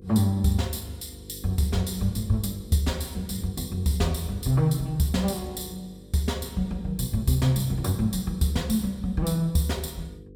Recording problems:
hum; 50 Hz, harmonics up to 500 Hz, SNR 20 dB

